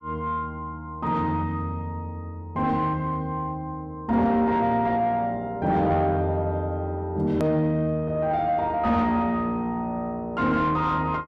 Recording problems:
distortion; soft clipping, signal-to-distortion ratio 11 dB
edit click; at 7.5 s

